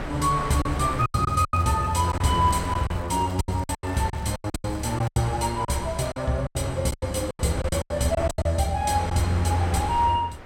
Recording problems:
wind on the microphone; below 1.2 kHz, SNR 12 dB
packet loss; 13% of the sound replaced, filled with silence
crackling; from 0.5 to 5 s; loose cable, SNR 28 dB

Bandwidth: 16.5 kHz